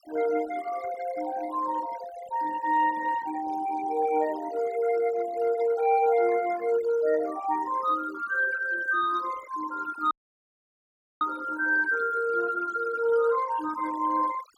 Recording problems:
noise reduction artefacts; signal-to-artefact ratio 18 dB
audio cutting out; at 10 s for 1 s

